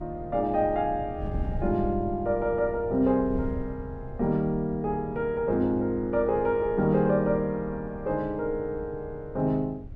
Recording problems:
wind noise; below 140 Hz, SNR 13 dB

